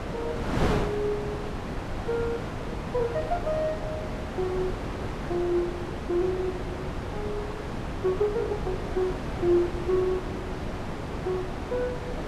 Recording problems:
wind noise; below 750 Hz, SNR 3 dB

